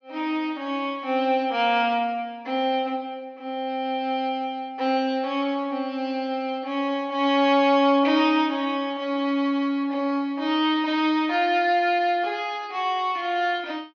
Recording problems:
low-pass filter; nothing above 6.5 kHz

